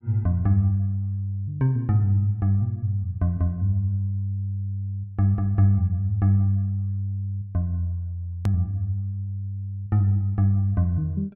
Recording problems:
hard cut with a click; at 8.5 s

